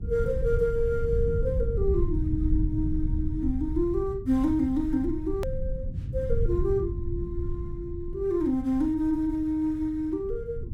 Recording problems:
low-frequency rumble; below 96 Hz, SNR 4 dB
click at an edit; at 5.5 s

